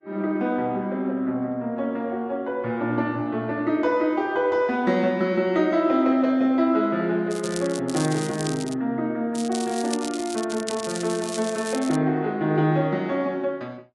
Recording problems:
codec artefacts; Vorbis, log-spectral distance 3 dB
crackle; from 7.5 to 9 s and from 9.5 to 12 s; loose cable, SNR 12 dB

